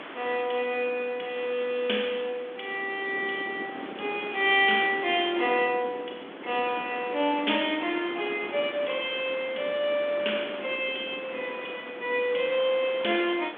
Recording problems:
phone line; 260 Hz to 3.5 kHz, G.726
hiss; SNR 15 dB
wind on the microphone; below 560 Hz, SNR 16 dB

